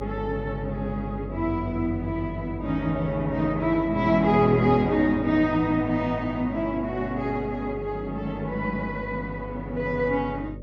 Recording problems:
treble cut off; nothing above 8 kHz
hum; 50 Hz, harmonics up to 600 Hz, SNR 12 dB

